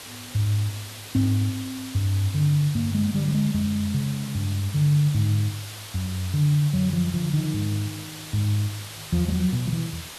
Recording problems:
hiss; slope 0 dB per octave, SNR 13 dB

